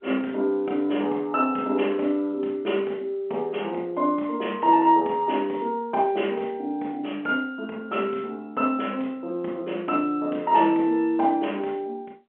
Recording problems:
phone line; 240 Hz to 3.2 kHz, G.711

